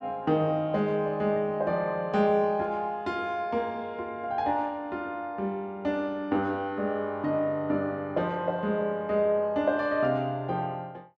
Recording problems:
none

